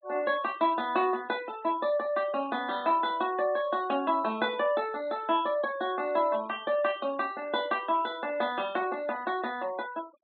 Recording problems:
low-pass filter; nothing above 4 kHz
denoising artefacts; signal-to-artefact ratio 21 dB

